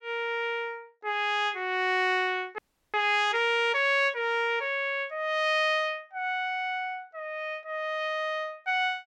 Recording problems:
audio freezing; at 2.5 s

